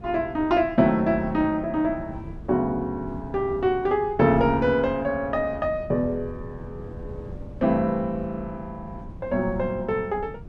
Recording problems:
wind on the microphone; below 210 Hz, SNR 16 dB

